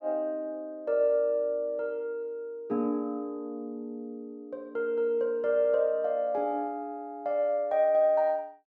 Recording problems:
none

